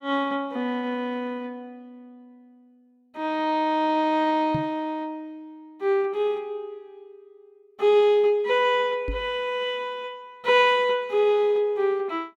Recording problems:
microphone thump; at 4.5 s and at 9 s; peak -2 dB vs average level

